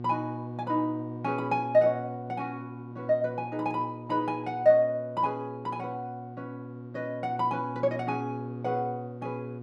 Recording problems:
electrical hum; 60 Hz, harmonics up to 720 Hz, SNR 11 dB

